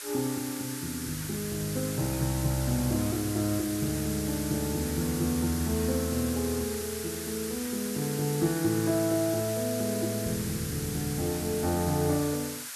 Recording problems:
hiss; SNR 6 dB

